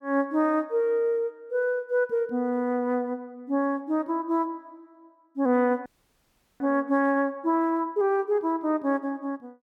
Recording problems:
audio freezing; at 6 s for 0.5 s

